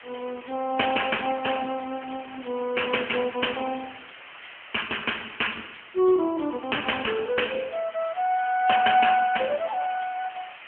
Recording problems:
phone line; 280 Hz to 3.1 kHz, AMR-NB
hiss; SNR 18 dB

